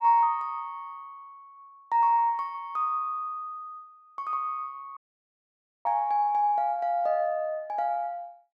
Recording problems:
audio cutting out; at 5 s for 1 s

